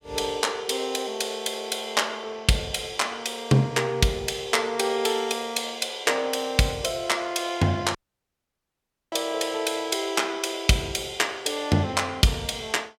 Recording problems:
dropout; at 8 s for 1 s

